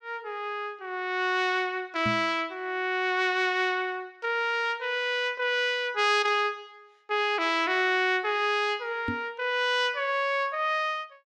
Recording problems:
microphone thump; at 2 s and at 9 s; peak -2 dB vs average level

